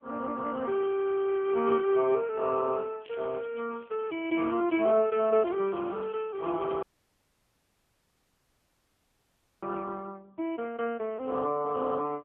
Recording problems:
phone line; 240 Hz to 3.1 kHz, AMR-NB
crackle; from 3 to 7 s; loose cable, SNR 27 dB
dropout; at 7 s for 3 s

